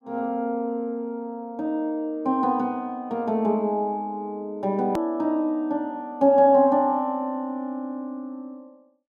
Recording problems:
hard cut with a click; at 5 s

